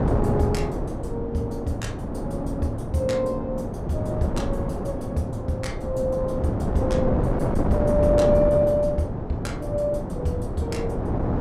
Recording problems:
wind noise; below 430 Hz, SNR 1 dB

